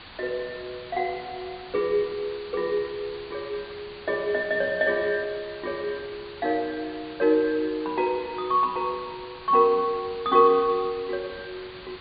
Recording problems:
treble missing; nothing above 4.5 kHz
hiss; SNR 17 dB

